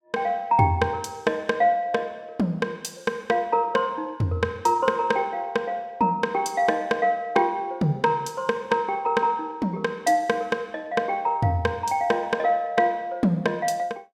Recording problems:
none

